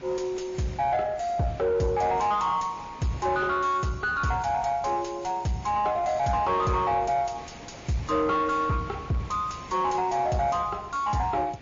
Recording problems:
lossy compression; MP3, log-spectral distance 3 dB, nothing above 6.9 kHz
distorted audio; soft clipping, signal-to-distortion ratio 10 dB
hiss; SNR 20 dB

